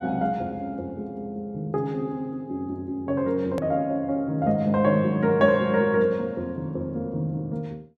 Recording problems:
edit click; at 3.5 s

